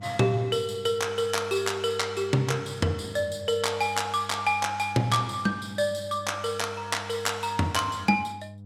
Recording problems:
hum; 50 Hz, harmonics up to 500 Hz, SNR 17 dB

